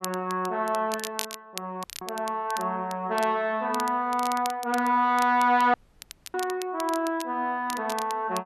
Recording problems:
crackle; vinyl, SNR 14 dB
audio cutting out; at 2 s and at 5.5 s for 0.5 s

